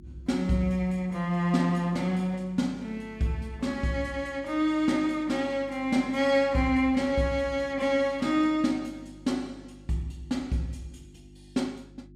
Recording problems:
mains hum; 50 Hz, harmonics up to 350 Hz, SNR 23 dB

